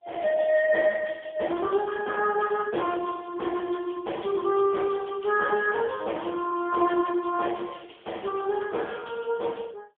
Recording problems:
telephone audio; 240 Hz to 2.9 kHz, AMR-NB, then MP3

